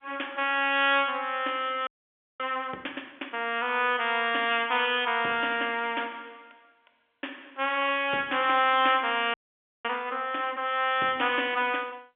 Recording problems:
telephone audio; 260 Hz to 3.5 kHz, G.711
frozen audio; at 2 s for 0.5 s and at 9.5 s for 0.5 s

